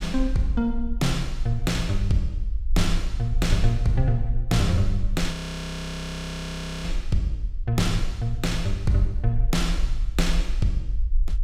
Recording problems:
rumble; below 48 Hz, SNR 4 dB
audio freezing; at 5.5 s for 1.5 s

